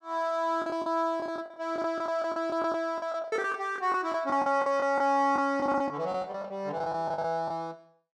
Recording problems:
packet loss; 15% of the sound replaced, filled with the last packet

